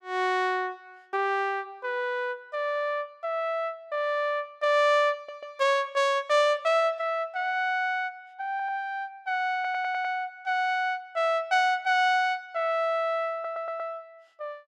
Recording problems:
stutter; 4 times, first at 5 s

